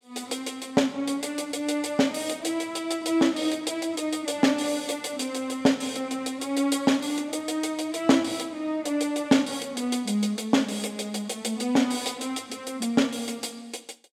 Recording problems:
none

